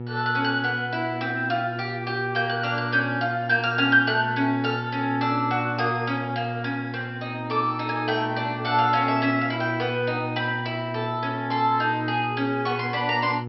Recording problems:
treble missing; nothing above 5.5 kHz
electrical hum; 60 Hz, harmonics up to 960 Hz, SNR 9 dB

